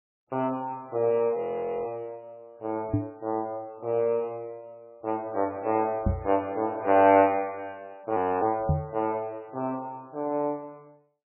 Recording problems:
lossy compression; MP3, log-spectral distance 2 dB, nothing above 2.4 kHz
frozen audio; at 1.5 s and at 8 s
microphone thump; at 3 s, at 6 s and at 8.5 s; peak +6 dB vs average level

